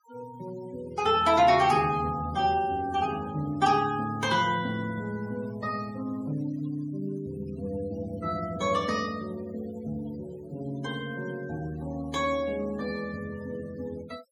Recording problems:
denoising artefacts; signal-to-artefact ratio 20 dB

